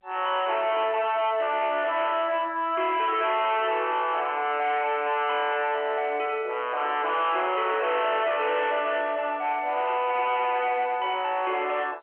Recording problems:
telephone audio; 300 Hz to 3.3 kHz, G.711
distortion; hard clipping, uneven, signal-to-distortion ratio 7 dB

